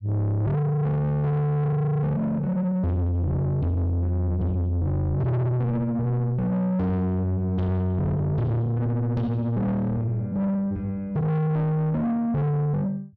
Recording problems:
distortion; soft clipping, signal-to-distortion ratio 7 dB

